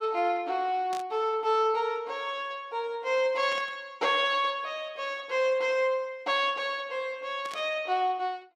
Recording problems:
burst of static; at 1 s, at 3.5 s and at 7.5 s; peak -9 dB vs average level

